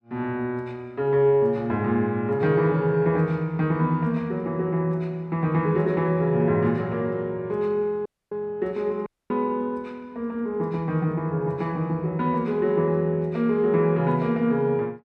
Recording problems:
audio cutting out; at 8 s and at 9 s

